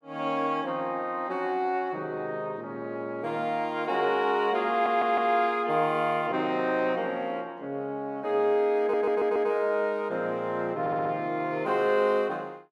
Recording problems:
stutter; at 4.5 s, at 9 s and at 11 s

